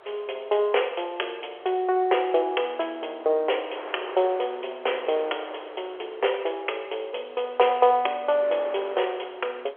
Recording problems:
telephone audio; 340 Hz to 3.3 kHz, G.711
wind noise; below 1.2 kHz, SNR 16 dB

